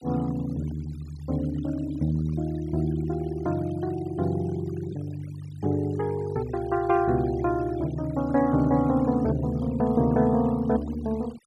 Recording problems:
noise reduction artefacts; signal-to-artefact ratio 21 dB

